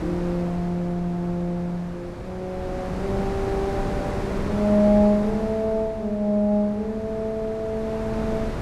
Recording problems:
wind on the microphone; below 610 Hz, SNR 8 dB

